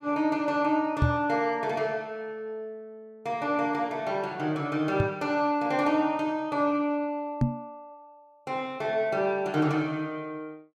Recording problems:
microphone bump; at 1 s, at 5 s and at 7.5 s; peak +7 dB vs average level

